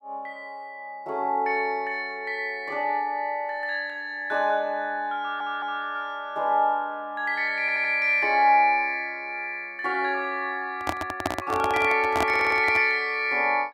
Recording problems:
stutter; at 5 s, at 7.5 s and at 12 s
microphone handling noise; from 11 to 13 s; peak +2 dB vs average level

